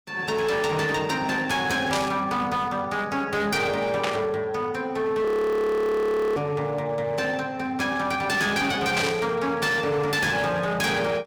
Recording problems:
distortion; hard clipping, signal-to-distortion ratio 11 dB
static burst; 4 times, first at 2 s; peak +1 dB vs average level
audio freezing; at 5.5 s for 1 s

